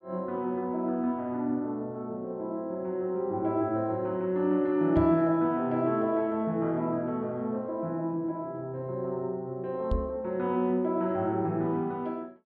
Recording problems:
knock on the microphone; at 5 s and at 10 s; peak +2 dB vs average level

